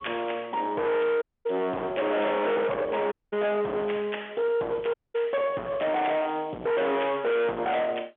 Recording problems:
phone line; 560 Hz to 3.6 kHz, G.711
distortion; hard clipping, uneven, signal-to-distortion ratio 6 dB
audio cutting out; at 1 s, at 3 s and at 5 s

